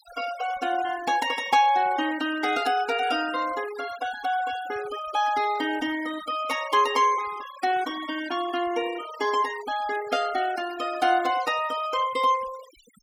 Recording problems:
denoising artefacts; signal-to-artefact ratio 16 dB

